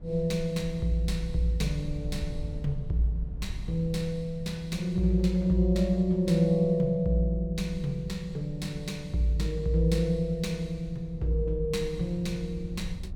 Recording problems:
rumble; below 82 Hz, SNR 14 dB

